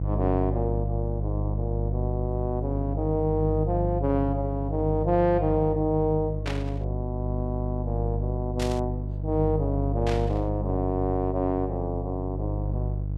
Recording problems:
hum; 50 Hz, harmonics up to 500 Hz, SNR 1 dB
burst of static; at 6.5 s, at 8.5 s and at 10 s; peak -2 dB vs average level

